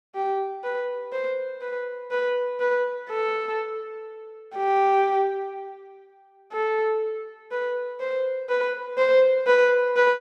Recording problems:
none

